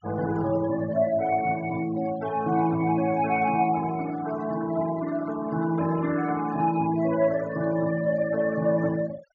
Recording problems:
treble cut off; nothing above 7.1 kHz
noise reduction artefacts; signal-to-artefact ratio 17 dB

